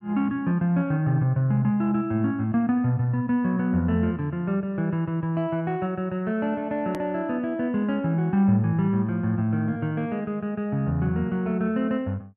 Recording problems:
hard cut with a click; at 7 s

